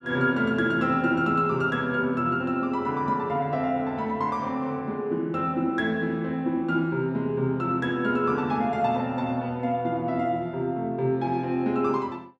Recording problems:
none

